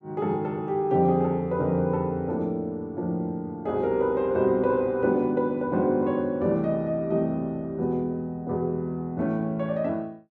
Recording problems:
none

